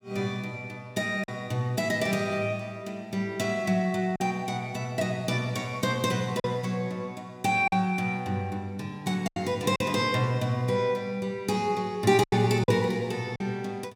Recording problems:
lost packets; 3% of the sound replaced, filled with silence

